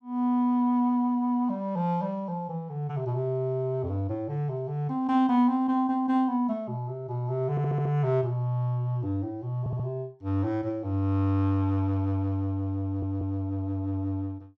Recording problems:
stutter; at 7.5 s, at 9.5 s and at 13 s

